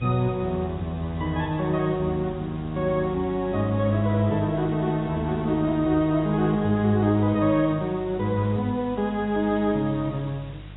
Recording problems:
lossy codec; AAC, log-spectral distance 5 dB, nothing above 3.8 kHz
hum; 50 Hz, harmonics up to 400 Hz, SNR 18 dB
hiss; SNR 27 dB

